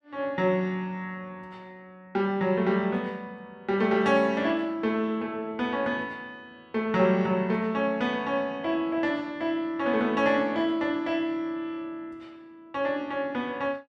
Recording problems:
none

